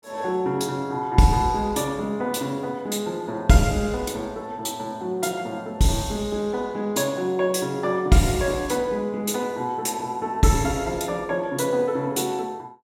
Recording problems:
none

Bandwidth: 16.5 kHz